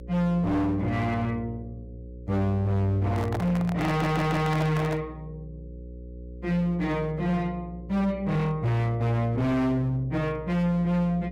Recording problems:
distorted audio; hard clipping, signal-to-distortion ratio 6 dB
hum; 60 Hz, harmonics up to 540 Hz, SNR 16 dB
handling noise; from 3 to 5 s; peak -1 dB vs average level
stutter; at 4 s

